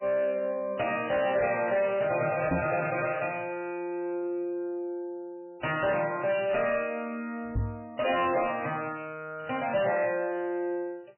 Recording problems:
lossy compression; MP3, log-spectral distance 4 dB, nothing above 2.7 kHz
distortion; soft clipping, signal-to-distortion ratio 11 dB
microphone thump; at 2.5 s and at 7.5 s; peak +3 dB vs average level

